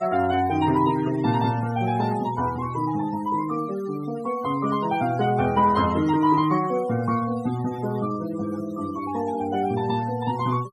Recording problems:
noise reduction artefacts; signal-to-artefact ratio 18 dB

